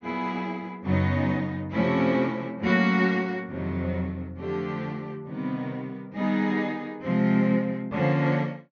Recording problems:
low-pass filter; nothing above 6.5 kHz

